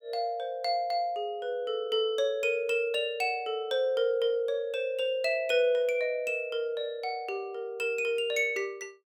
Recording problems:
none

